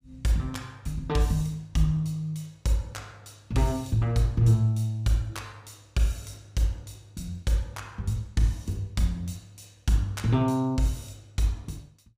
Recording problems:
none

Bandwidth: 15.5 kHz